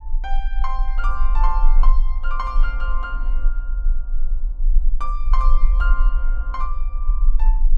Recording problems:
low-frequency rumble; below 34 Hz, strongest tone 24 Hz, SNR -8 dB

